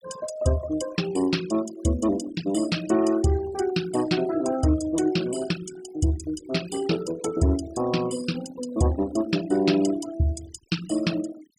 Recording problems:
noise reduction artefacts; signal-to-artefact ratio 15 dB

